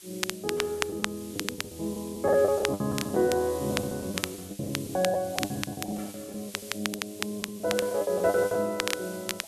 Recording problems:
background hiss; SNR 14 dB
crackling; vinyl, SNR 5 dB
lost packets; 15% of the sound replaced, filled with the last packet

